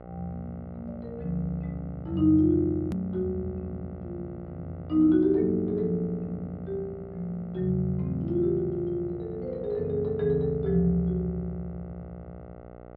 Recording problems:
treble missing; nothing above 5.5 kHz
electrical hum; 60 Hz, harmonics up to 1.5 kHz, SNR 18 dB
hard cut with a click; at 3 s

